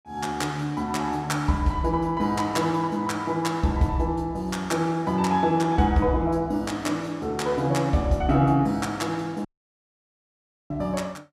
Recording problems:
audio cutting out; at 9.5 s for 1.5 s

